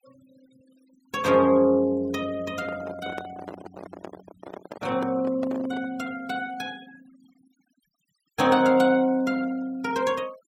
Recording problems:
denoising artefacts; signal-to-artefact ratio 25 dB
handling noise; from 2.5 to 6 s; peak -7 dB vs average level

